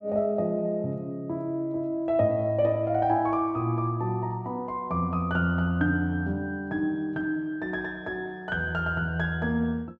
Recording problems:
none

